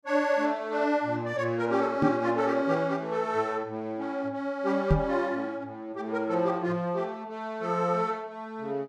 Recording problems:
microphone thump; at 2 s and at 5 s; peak +8 dB vs average level

